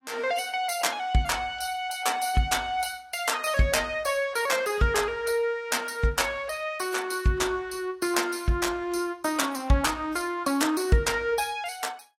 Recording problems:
lossy compression; AAC, log-spectral distance 4 dB, nothing above 14.3 kHz

